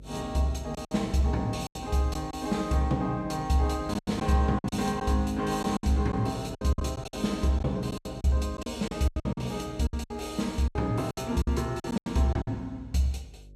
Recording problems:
hum; 50 Hz, harmonics up to 550 Hz, SNR 20 dB
lost packets; 12% of the sound replaced, filled with silence

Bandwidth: 15 kHz